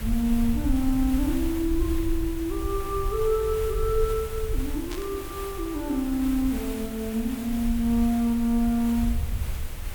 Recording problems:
mains hum; 50 Hz, harmonics up to 550 Hz, SNR 25 dB
hiss; slope -3 dB per octave, SNR 13 dB
low-frequency rumble; below 68 Hz, SNR 7 dB
static burst; at 5 s; peak -8 dB vs average level

